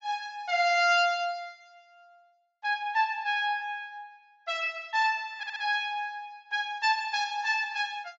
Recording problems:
low-pass filter; nothing above 8 kHz
stutter; at 5.5 s

